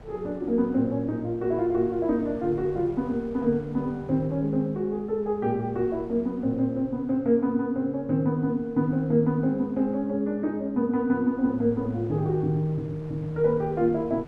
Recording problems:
wind noise; below 470 Hz, SNR 22 dB

